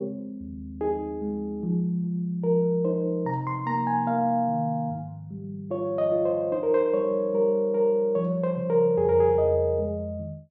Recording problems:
none

